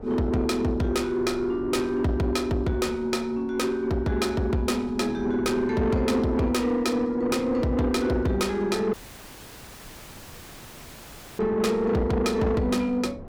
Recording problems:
distorted audio; soft clipping, signal-to-distortion ratio 10 dB
wind on the microphone; below 430 Hz, SNR 17 dB
audio cutting out; at 9 s for 2.5 s

